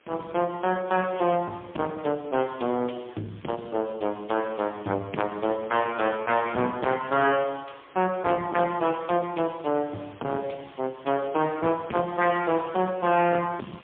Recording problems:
phone line; 150 Hz to 3.4 kHz, AMR-NB, then MP3
distorted audio; soft clipping, signal-to-distortion ratio 7 dB
hiss; SNR 30 dB

